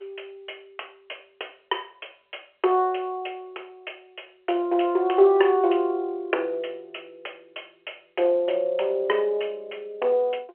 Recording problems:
telephone audio; 340 Hz to 3.2 kHz, G.711

